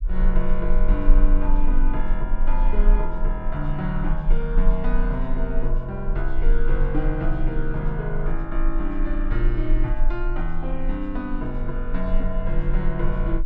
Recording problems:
rumble; below 32 Hz, strongest tone 22 Hz, SNR -2 dB

